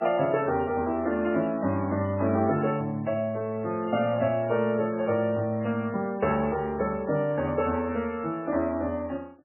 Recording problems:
lossy compression; MP3, log-spectral distance 2 dB, nothing above 2.7 kHz

